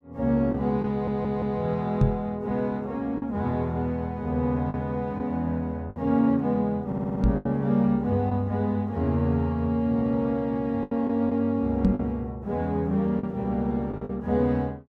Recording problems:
packet loss; 4% of the sound replaced, filled with the last packet
audio stuttering; at 1 s and at 7 s
microphone bump; at 2 s, at 7 s and at 12 s; peak +7 dB vs average level

